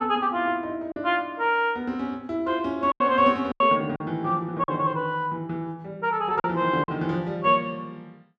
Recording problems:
packet loss; 4% of the sound replaced, filled with silence

